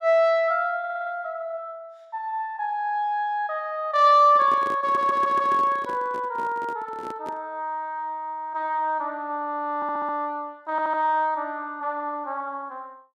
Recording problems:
stutter; 4 times, first at 1 s
microphone handling noise; from 4.5 to 7.5 s; peak -8 dB vs average level

